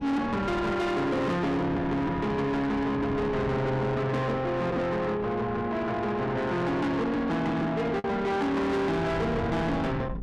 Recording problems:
distortion; soft clipping, signal-to-distortion ratio 8 dB
wind noise; below 460 Hz, SNR 11 dB
packet loss; 0.6% of the sound replaced, filled with the last packet

